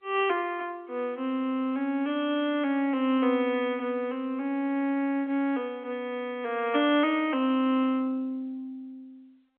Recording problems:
phone line; 240 Hz to 3.4 kHz, G.711

